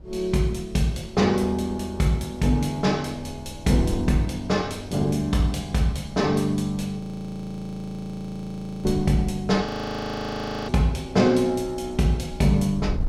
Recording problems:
wind on the microphone; below 90 Hz, SNR 18 dB
frozen audio; at 7 s for 2 s and at 9.5 s for 1 s

